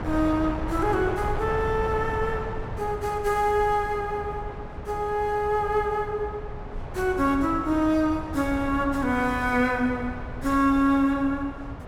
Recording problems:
wind on the microphone; below 530 Hz, SNR 10 dB

